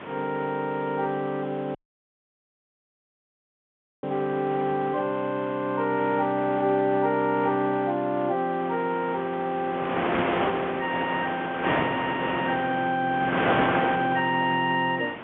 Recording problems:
phone line; 240 Hz to 3.7 kHz, G.711
background hiss; SNR 27 dB
wind noise; below 1.7 kHz, SNR 5 dB
audio cutting out; at 2 s for 2.5 s

